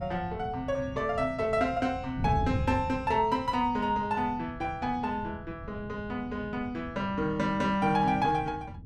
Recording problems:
wind noise; below 170 Hz, SNR 11 dB

